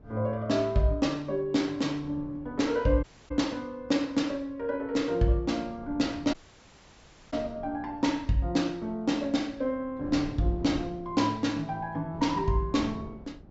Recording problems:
low-pass filter; nothing above 8 kHz
wind noise; below 320 Hz, SNR 17 dB
audio cutting out; at 3 s and at 6.5 s for 1 s

